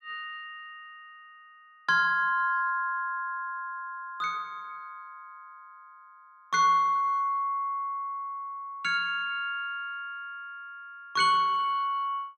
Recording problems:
none

